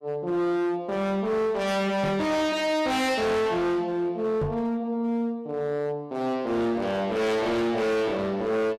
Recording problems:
distorted audio; hard clipping, signal-to-distortion ratio 7 dB
knock on the microphone; at 2 s and at 4.5 s; peak 0 dB vs average level

